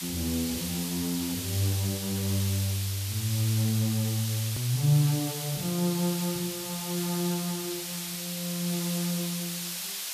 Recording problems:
hiss; slope +4 dB per octave, SNR 4 dB
hard cut with a click; at 4.5 s

